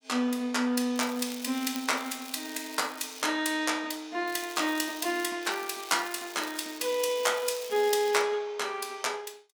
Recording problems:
crackle; from 1 to 3 s, from 4.5 to 5.5 s and from 5.5 to 8 s; loose cable, SNR 14 dB

